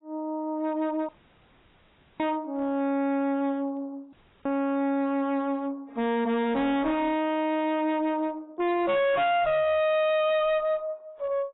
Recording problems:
lossy codec; AAC, log-spectral distance 4 dB, nothing above 3.4 kHz
distortion; hard clipping, uneven, signal-to-distortion ratio 6 dB
audio cutting out; at 1 s for 1 s and at 4 s

